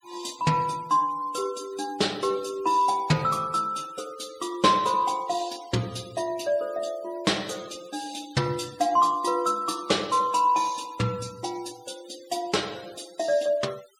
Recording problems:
noise reduction artefacts; signal-to-artefact ratio 21 dB

